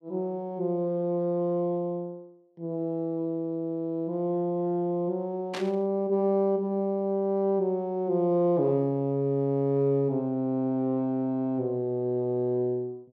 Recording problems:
burst of static; at 5.5 s; peak -5 dB vs average level

